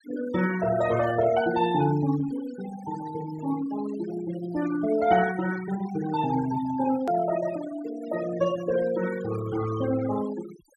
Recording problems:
noise reduction artefacts; signal-to-artefact ratio 13 dB
edit click; at 7 s

